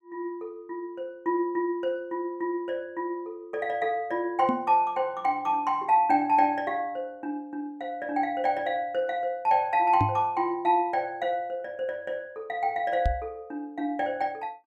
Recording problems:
knock on the microphone; at 4.5 s, at 10 s and at 13 s; peak +4 dB vs average level

